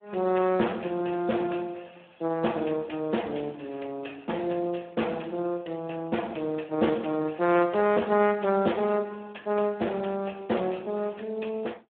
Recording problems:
phone line; 260 Hz to 3.3 kHz, Speex

